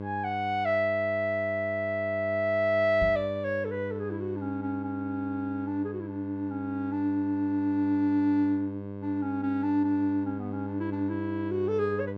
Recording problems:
hum; 50 Hz, harmonics up to 1.1 kHz, SNR 9 dB
microphone bump; at 3 s; peak -1 dB vs average level

